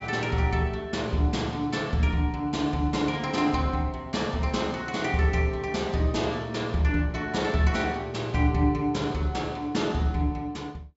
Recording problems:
low-pass filter; nothing above 8 kHz

